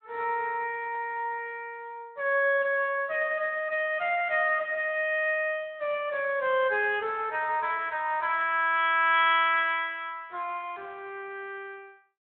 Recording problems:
telephone audio; 340 Hz to 3.5 kHz, Speex

